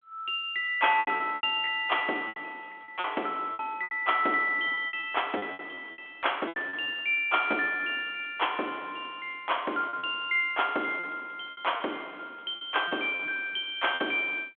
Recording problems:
telephone audio; 260 Hz to 3.4 kHz, G.726
packet loss; 11% of the sound replaced, filled with repeated pitch periods

